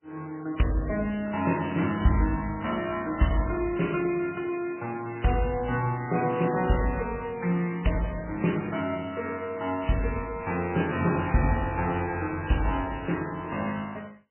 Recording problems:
lossy codec; MP3, log-spectral distance 8 dB, nothing above 3 kHz

